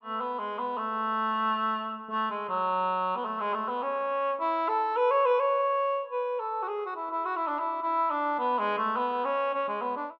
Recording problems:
low-pass filter; nothing above 8 kHz

